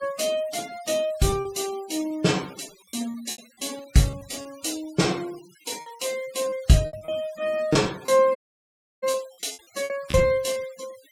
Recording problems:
noise reduction artefacts; signal-to-artefact ratio 18 dB
lost packets; 9% of the sound replaced, filled with repeated pitch periods
audio cutting out; at 8.5 s for 0.5 s

